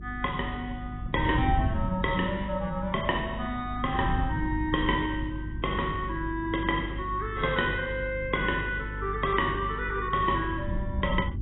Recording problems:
codec artefacts; AAC, log-spectral distance 3 dB, nothing above 3.4 kHz
hum; 50 Hz, harmonics up to 350 Hz, SNR 10 dB
wind on the microphone; below 120 Hz, SNR 9 dB

